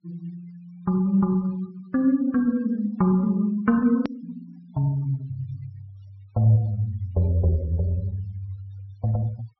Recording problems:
treble cut off; nothing above 5.6 kHz
denoising artefacts; signal-to-artefact ratio 27 dB
edit click; at 4 s

